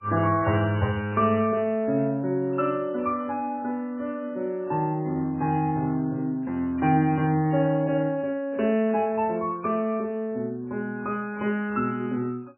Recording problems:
lossy codec; MP3, log-spectral distance 2 dB, nothing above 2.5 kHz

